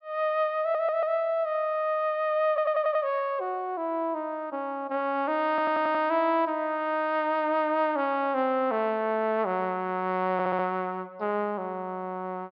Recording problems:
treble missing; nothing above 5.5 kHz
stutter; 4 times, first at 0.5 s

